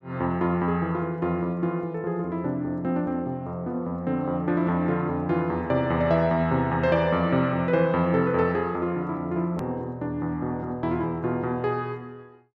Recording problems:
edit click; at 9.5 s

